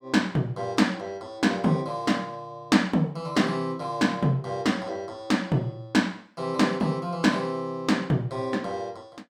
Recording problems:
none

